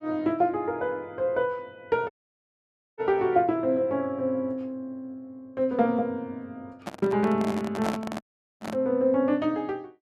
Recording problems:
audio cutting out; at 2 s for 1 s and at 8 s
handling noise; from 7 to 9 s; peak 0 dB vs average level

